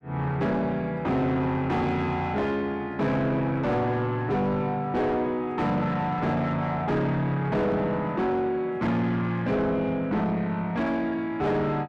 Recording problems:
distortion; soft clipping, signal-to-distortion ratio 7 dB

